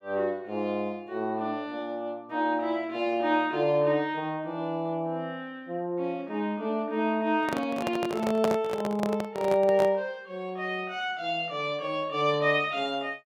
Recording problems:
handling noise; from 7.5 to 10 s; peak +4 dB vs average level

